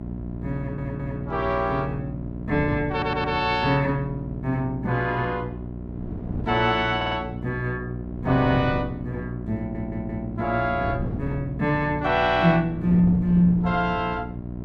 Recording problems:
electrical hum; 60 Hz, harmonics up to 720 Hz, SNR 9 dB
wind noise; below 250 Hz, SNR 13 dB
audio stuttering; 4 times, first at 0.5 s

